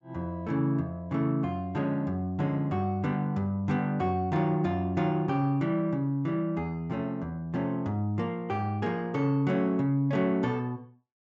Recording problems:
low-pass filter; nothing above 8 kHz

